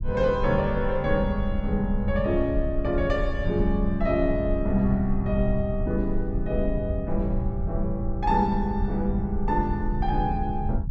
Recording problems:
low-frequency rumble; below 78 Hz, SNR 5 dB

